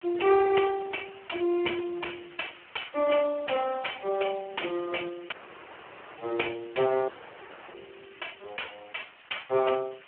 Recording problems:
phone line; 300 Hz to 3.1 kHz, Speex
background hiss; SNR 22 dB
dropout; at 5.5 s for 1 s and at 7 s for 0.5 s

